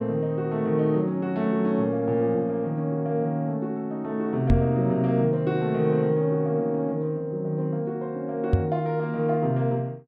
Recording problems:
microphone bump; at 4.5 s and at 8.5 s; peak +8 dB vs average level

